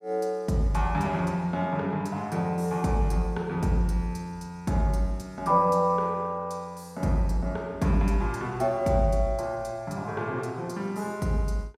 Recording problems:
none

